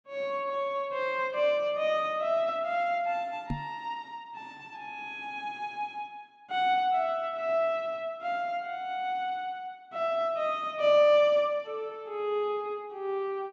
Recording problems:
microphone bump; at 3.5 s; peak 0 dB vs average level

